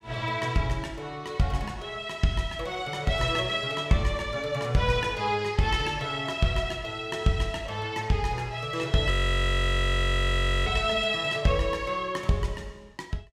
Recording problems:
frozen audio; at 9 s for 1.5 s

